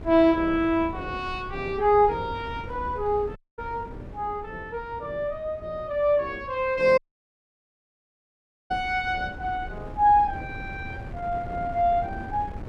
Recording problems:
wind on the microphone; below 260 Hz, SNR 15 dB
audio cutting out; at 3.5 s and at 7 s for 1.5 s

